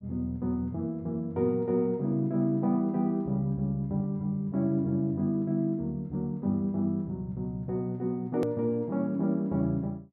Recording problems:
click at an edit; at 8.5 s

